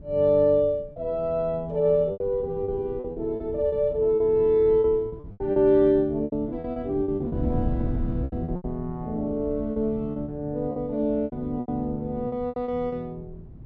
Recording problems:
wind noise; below 150 Hz, SNR 13 dB
lost packets; 11% of the sound replaced, filled with repeated pitch periods

